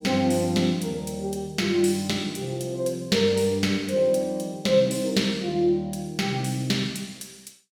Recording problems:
none

